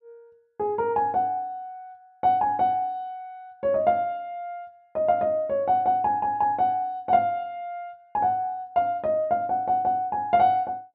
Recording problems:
none

